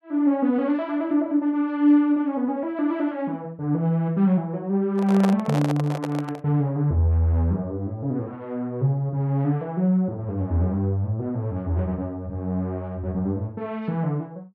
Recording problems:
microphone handling noise; from 5 to 6.5 s; peak 0 dB vs average level

